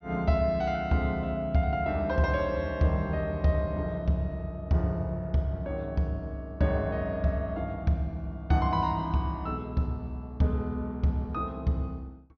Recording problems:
low-pass filter; nothing above 6.3 kHz

